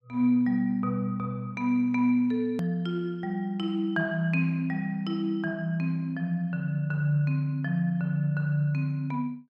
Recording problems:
edit click; at 2.5 s

